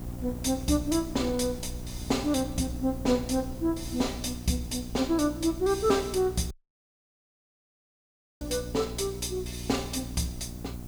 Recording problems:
mains hum; 60 Hz, harmonics up to 720 Hz, SNR 11 dB
background hiss; SNR 22 dB
wind on the microphone; below 120 Hz, SNR 16 dB
dropout; at 6.5 s for 2 s

